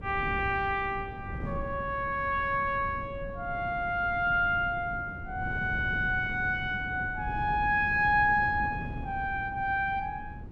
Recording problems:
wind noise; below 210 Hz, SNR 11 dB

